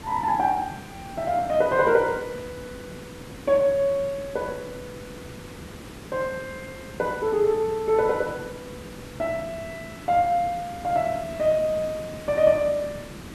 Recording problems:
hiss; SNR 15 dB

